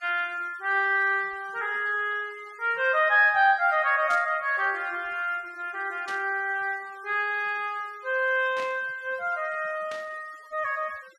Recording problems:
noise reduction artefacts; signal-to-artefact ratio 27 dB
burst of static; 4 times, first at 4 s; peak -10 dB vs average level

